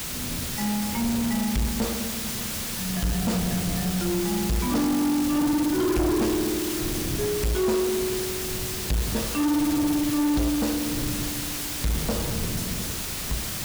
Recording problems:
distorted audio; soft clipping, signal-to-distortion ratio 8 dB
background hiss; SNR 4 dB
wind noise; below 310 Hz, SNR 9 dB

